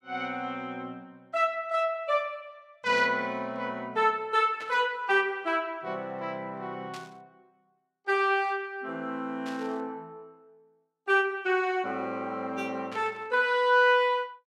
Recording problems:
static burst; 5 times, first at 3 s; peak -11 dB vs average level

